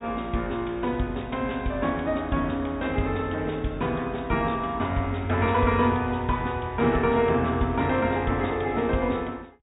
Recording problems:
treble missing; nothing above 4 kHz

